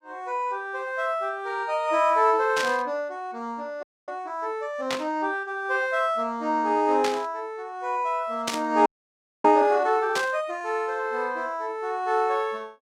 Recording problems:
burst of static; 5 times, first at 2.5 s; peak +2 dB vs average level
audio freezing; at 4 s and at 9 s for 0.5 s

